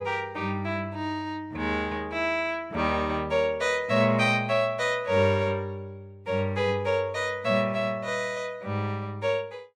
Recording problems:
none

